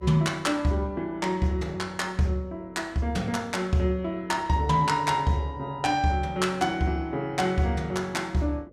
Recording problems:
hum; 50 Hz, harmonics up to 600 Hz, SNR 26 dB

